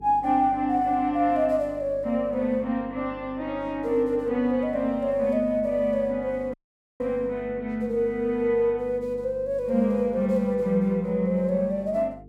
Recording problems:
hum; 50 Hz, harmonics up to 450 Hz, SNR 21 dB
audio cutting out; at 6.5 s

